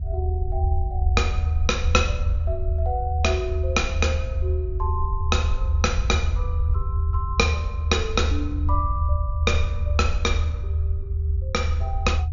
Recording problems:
treble cut off; nothing above 7 kHz
rumble; below 80 Hz, strongest tone 78 Hz, SNR -2 dB

